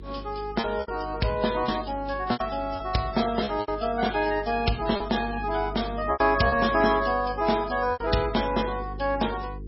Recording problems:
codec artefacts; MP3, log-spectral distance 5 dB, nothing above 5.5 kHz
electrical hum; 50 Hz, harmonics up to 450 Hz, SNR 14 dB
lost packets; 7% of the sound replaced, filled with repeated pitch periods

